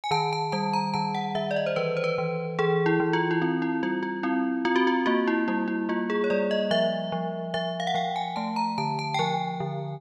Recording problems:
none

